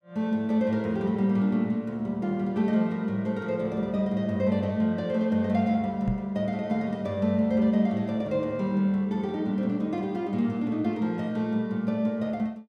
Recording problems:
knock on the microphone; at 6 s; peak +1 dB vs average level

